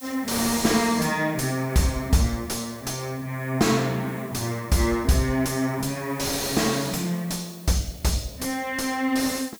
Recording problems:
distortion; soft clipping, signal-to-distortion ratio 6 dB
hiss; SNR 21 dB

